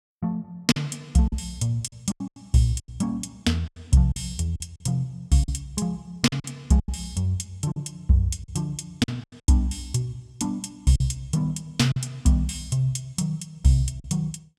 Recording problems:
lost packets; 8% of the sound replaced, filled with silence

